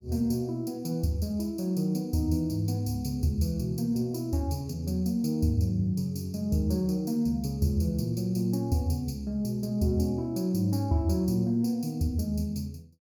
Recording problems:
none

